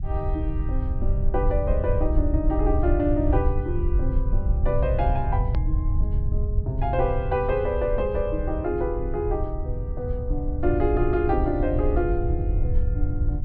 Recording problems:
low-pass filter; nothing above 5.5 kHz
low-frequency rumble; below 78 Hz, SNR 0 dB
click at an edit; at 5.5 s

